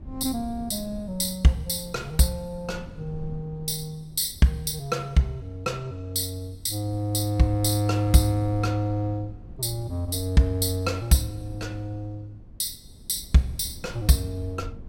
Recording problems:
wind on the microphone; below 140 Hz, SNR 18 dB

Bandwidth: 16 kHz